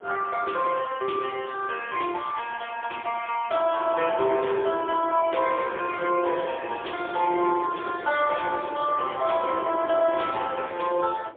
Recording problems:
phone line; 300 Hz to 3.4 kHz, AMR-NB, then MP3
wind noise; below 600 Hz, SNR 11 dB

